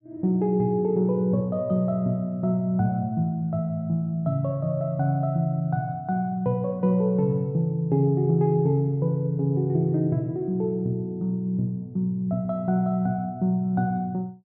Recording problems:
none

